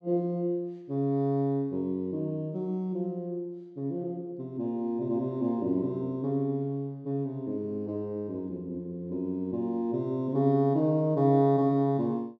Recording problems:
none

